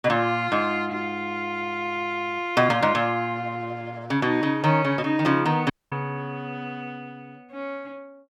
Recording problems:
audio cutting out; at 5.5 s

